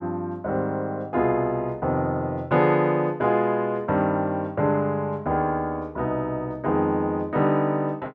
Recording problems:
none

